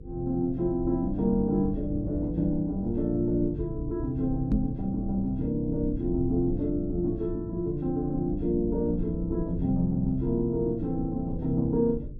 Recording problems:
electrical hum; 50 Hz, harmonics up to 500 Hz, SNR 17 dB
rumble; below 90 Hz, SNR 11 dB
knock on the microphone; at 4.5 s; peak +5 dB vs average level

